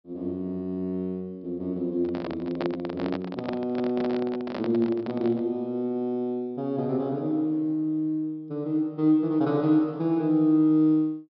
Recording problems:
treble cut off; nothing above 5.5 kHz
microphone handling noise; from 2 to 5.5 s; peak -2 dB vs average level

